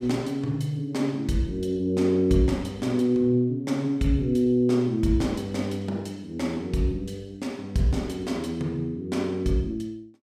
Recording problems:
none

